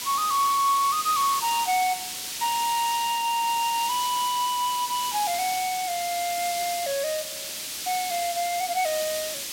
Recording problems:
hiss; SNR 5 dB

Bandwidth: 16.5 kHz